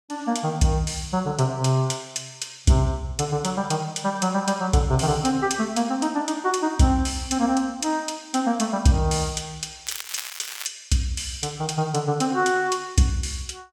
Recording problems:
crackling; at 10 s; loose cable, SNR 9 dB

